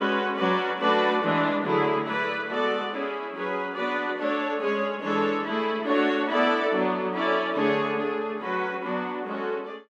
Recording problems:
none

